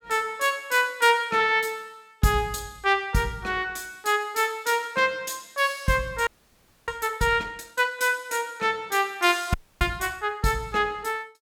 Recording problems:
audio freezing; at 6.5 s for 0.5 s and at 9.5 s

